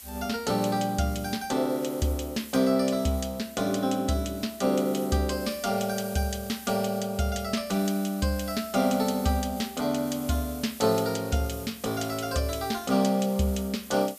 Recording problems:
background hiss; slope +2 dB per octave, SNR 16 dB

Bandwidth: 14.5 kHz